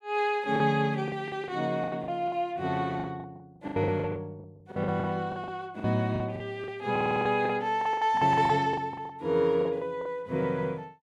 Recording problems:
packet loss; 16% of the sound replaced, filled with the last packet
audio stuttering; at 7 s

